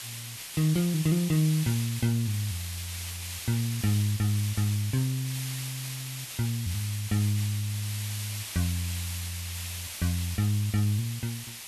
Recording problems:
hiss; slope +3 dB per octave, SNR 7 dB

